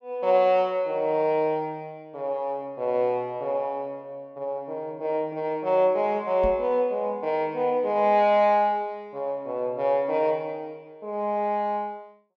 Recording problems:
microphone thump; at 6.5 s; peak -5 dB vs average level

